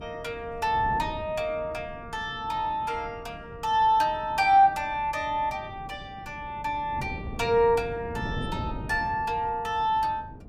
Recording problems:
wind noise; below 270 Hz, SNR 14 dB

